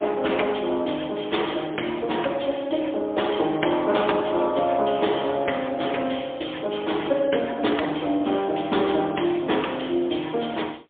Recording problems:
phone line; 280 Hz to 3.6 kHz, AMR-NB, then MP3

